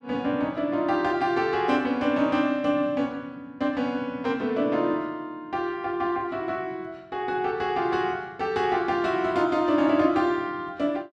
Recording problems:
none

